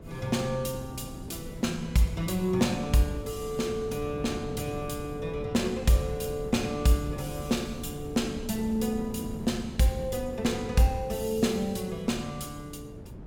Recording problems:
wind noise; below 290 Hz, SNR 11 dB

